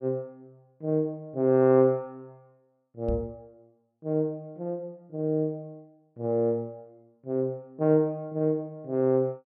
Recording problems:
knock on the microphone; at 3 s; peak -1 dB vs average level

